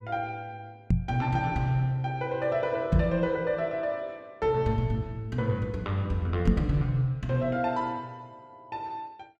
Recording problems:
knock on the microphone; at 1 s, at 3 s and at 6.5 s; peak +9 dB vs average level

